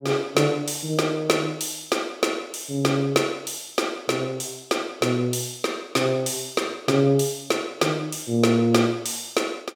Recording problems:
none

